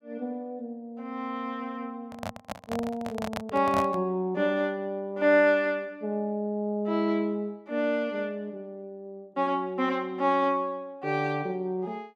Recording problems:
microphone handling noise; from 2 to 4 s; peak 0 dB vs average level

